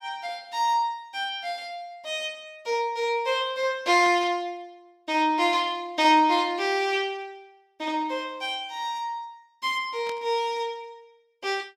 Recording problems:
static burst; at 4 s and at 10 s; peak -10 dB vs average level

